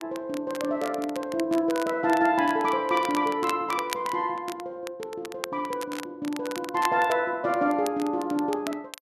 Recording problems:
crackling; vinyl, SNR 14 dB

